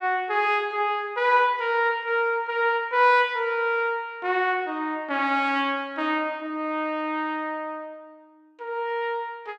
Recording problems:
none

